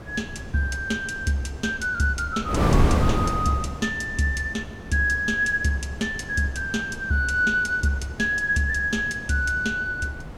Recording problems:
wind on the microphone; below 390 Hz, SNR 7 dB

